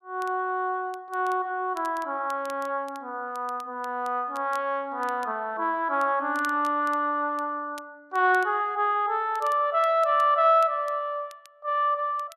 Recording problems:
crackle; vinyl, SNR 26 dB

